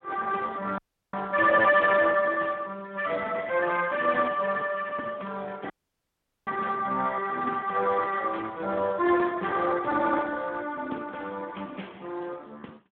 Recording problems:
telephone audio; 220 Hz to 2.9 kHz, Speex
dropout; at 1 s and at 5.5 s for 1 s

